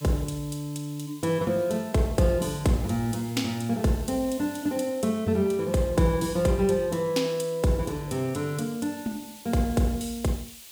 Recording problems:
background hiss; SNR 19 dB

